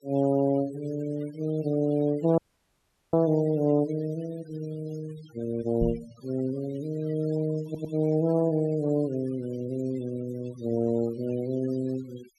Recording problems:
noise reduction artefacts; signal-to-artefact ratio 21 dB
audio cutting out; at 2.5 s for 1 s
microphone thump; at 6 s; peak +2 dB vs average level
stutter; at 7.5 s

